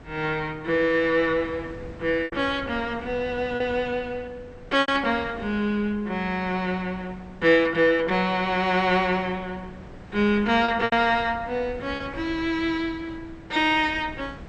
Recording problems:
lossy compression; MP2, log-spectral distance 2 dB
wind on the microphone; below 470 Hz, SNR 19 dB
packet loss; 3% of the sound replaced, filled with repeated pitch periods

